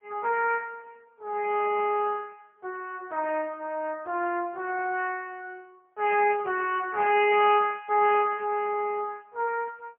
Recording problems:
phone line; 320 Hz to 3.3 kHz, AMR-NB, then MP3

